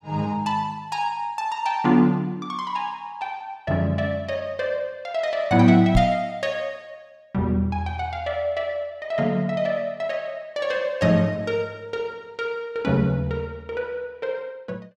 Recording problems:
microphone bump; at 6 s; peak +7 dB vs average level

